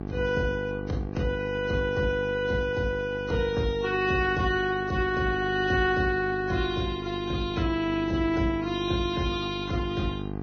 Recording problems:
codec artefacts; Vorbis, log-spectral distance 3 dB, nothing above 6 kHz
electrical hum; 50 Hz, harmonics up to 1.3 kHz, SNR 9 dB

